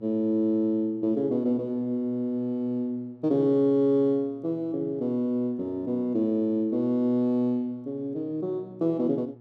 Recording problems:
hum; 60 Hz, harmonics up to 840 Hz, SNR 24 dB

